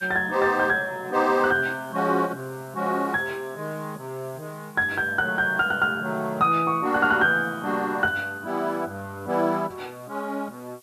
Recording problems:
background hiss; slope +4 dB per octave, SNR 27 dB

